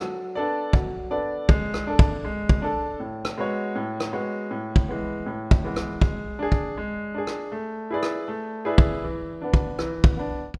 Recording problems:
none

